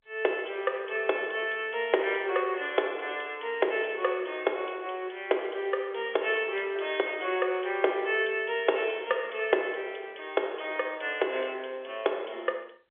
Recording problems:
telephone audio; 320 Hz to 3.5 kHz, G.711

